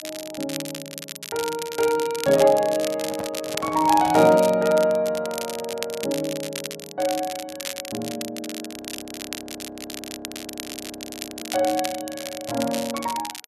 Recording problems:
crackle; vinyl, SNR 10 dB
handling noise; from 3 to 4.5 s; peak -7 dB vs average level
audio freezing; at 8.5 s for 2.5 s

